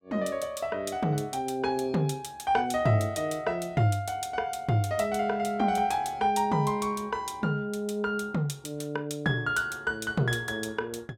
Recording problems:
none

